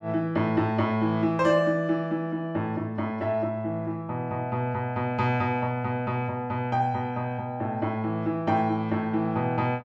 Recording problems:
none

